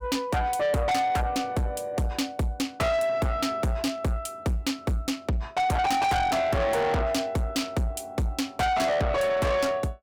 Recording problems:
distortion; soft clipping, signal-to-distortion ratio 6 dB

